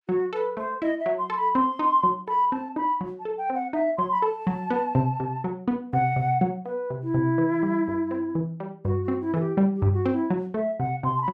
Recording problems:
none

